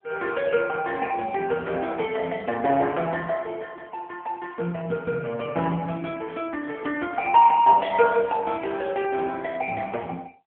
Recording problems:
phone line; 240 Hz to 3.3 kHz, AMR-NB

